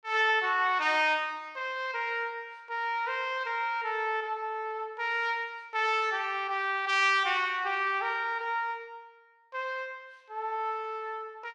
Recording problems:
none

